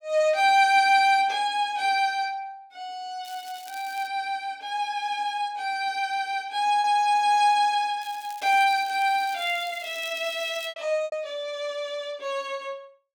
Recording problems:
packet loss; 1.6% of the sound replaced, filled with repeated pitch periods
crackle; at 3.5 s and from 8 to 11 s; loose cable, SNR 22 dB

